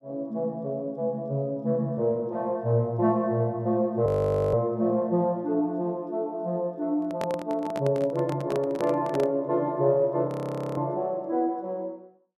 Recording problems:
frozen audio; at 4 s and at 10 s
handling noise; from 7 to 9.5 s; peak -4 dB vs average level

